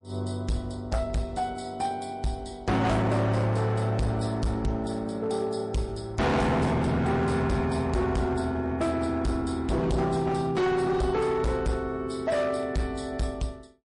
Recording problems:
codec artefacts; MP3, log-spectral distance 2 dB, nothing above 10.1 kHz
distorted audio; hard clipping, signal-to-distortion ratio 7 dB

